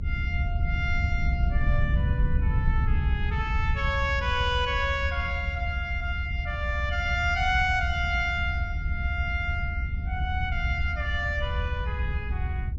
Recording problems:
treble missing; nothing above 8 kHz
rumble; below 84 Hz, SNR 0 dB

